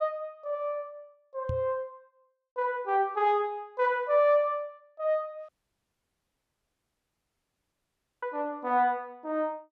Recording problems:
microphone bump; at 1.5 s; peak -1 dB vs average level
audio cutting out; at 5.5 s for 2.5 s

